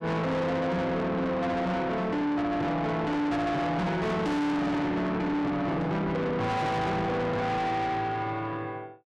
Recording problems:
distortion; soft clipping, signal-to-distortion ratio 6 dB

